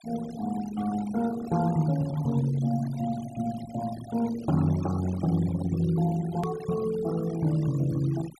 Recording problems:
denoising artefacts; signal-to-artefact ratio 17 dB
click at an edit; at 6.5 s

